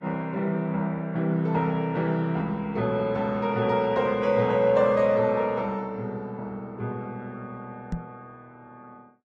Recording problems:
codec artefacts; Vorbis, log-spectral distance 2 dB
microphone bump; at 8 s; peak -1 dB vs average level

